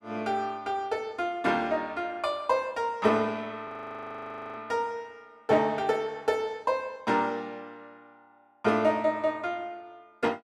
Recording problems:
frozen audio; at 3.5 s for 1 s

